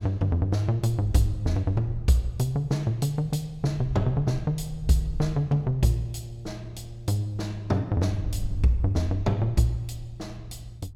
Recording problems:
wind noise; below 80 Hz, SNR 13 dB

